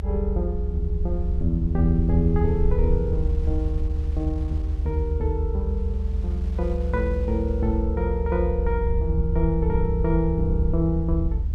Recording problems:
low-frequency rumble; below 72 Hz, SNR -1 dB
wind on the microphone; below 270 Hz, SNR 22 dB

